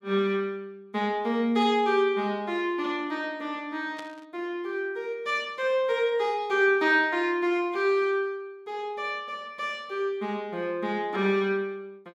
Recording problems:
static burst; at 4 s; peak -11 dB vs average level

